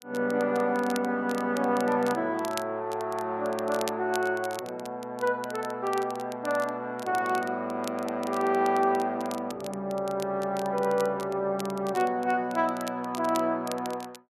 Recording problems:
crackle; vinyl, SNR 17 dB

